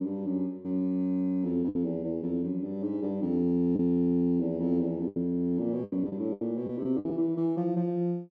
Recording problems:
lost packets; 6% of the sound replaced, filled with the last packet

